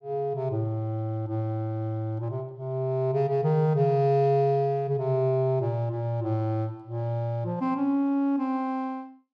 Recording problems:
none

